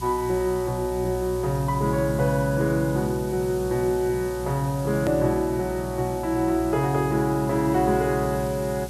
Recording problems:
electrical hum; 60 Hz, harmonics up to 420 Hz, SNR 12 dB
hiss; slope +2 dB per octave, SNR 18 dB
hard cut with a click; at 5 s

